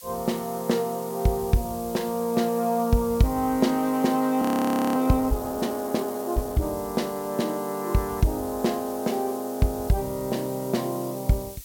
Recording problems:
hiss; slope +4 dB per octave, SNR 15 dB
audio freezing; at 4.5 s for 0.5 s

